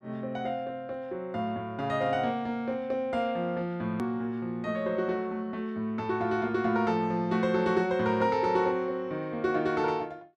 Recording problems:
click at an edit; at 4 s

